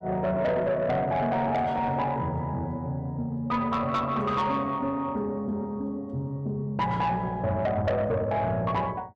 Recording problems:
distorted audio; soft clipping, signal-to-distortion ratio 11 dB

